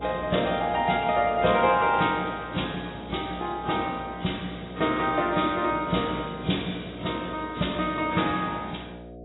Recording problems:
codec artefacts; AAC, log-spectral distance 7 dB, nothing above 3.8 kHz
hum; 60 Hz, harmonics up to 720 Hz, SNR 15 dB

